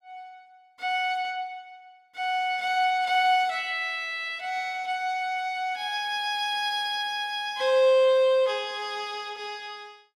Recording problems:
none

